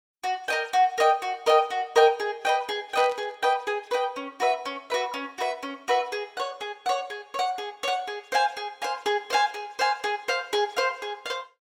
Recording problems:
burst of static; at 3 s; peak -9 dB vs average level

